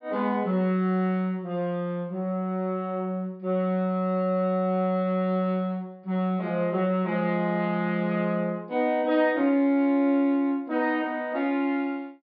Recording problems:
treble cut off; nothing above 5.5 kHz

